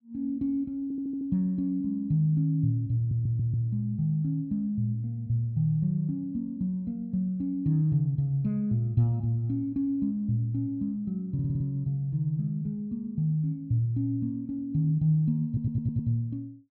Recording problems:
stutter; 4 times, first at 1 s

